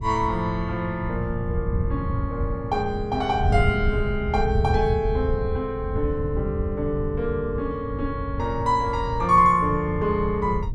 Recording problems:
wind noise; below 110 Hz, SNR 5 dB

